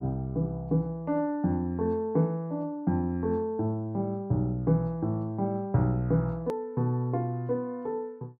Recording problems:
edit click; at 6.5 s

